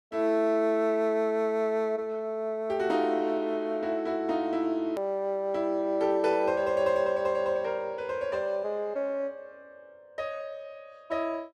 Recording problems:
edit click; at 5 s

